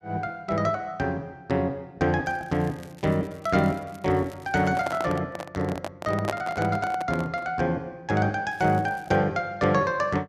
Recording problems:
crackle; from 2.5 to 5 s and at 8.5 s; loose cable, SNR 27 dB
microphone handling noise; from 4.5 to 7.5 s; peak +2 dB vs average level

